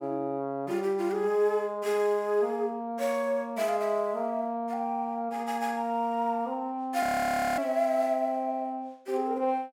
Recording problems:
audio freezing; at 7 s for 0.5 s

